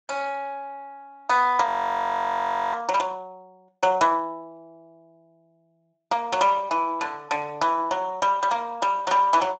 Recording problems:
lossy compression; Speex, log-spectral distance 2 dB
frozen audio; at 1.5 s for 1 s

